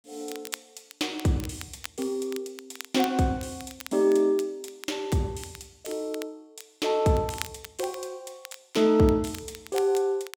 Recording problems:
crackle; vinyl, SNR 17 dB

